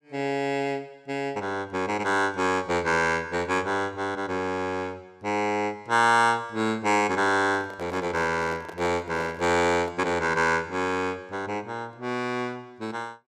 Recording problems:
microphone handling noise; from 7.5 to 10 s; peak -10 dB vs average level

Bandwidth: 14.5 kHz